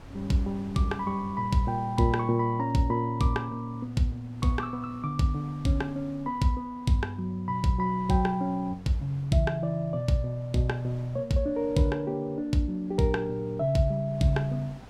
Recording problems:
wind on the microphone; below 550 Hz, SNR 23 dB

